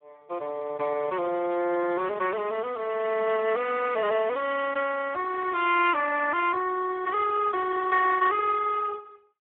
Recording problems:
phone line; 240 Hz to 2.6 kHz, Speex

